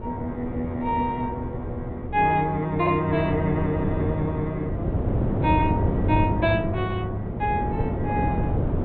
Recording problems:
low-pass filter; nothing above 4 kHz
wind noise; below 330 Hz, SNR 3 dB

